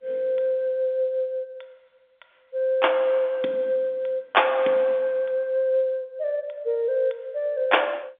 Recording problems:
phone line; 240 Hz to 3.6 kHz, G.711

